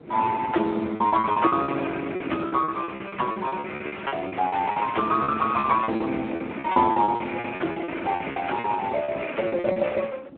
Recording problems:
telephone audio; 240 Hz to 3.6 kHz, Speex
wind on the microphone; below 460 Hz, SNR 17 dB
packet loss; 16% of the sound replaced, filled with repeated pitch periods

